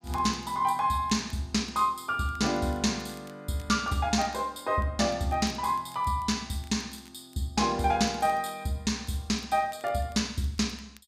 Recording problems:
crackling; vinyl, SNR 28 dB

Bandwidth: 15 kHz